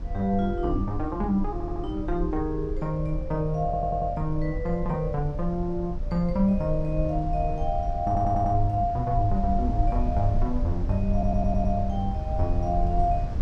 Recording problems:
low-frequency rumble; below 70 Hz, SNR 5 dB
audio stuttering; 4 times, first at 1.5 s

